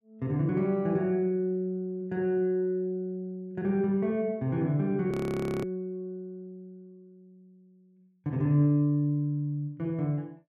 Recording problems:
frozen audio; at 5 s for 0.5 s

